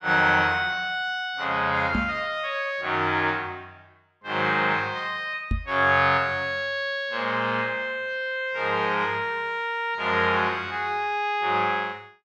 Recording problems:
microphone bump; at 2 s and at 5.5 s; peak +1 dB vs average level

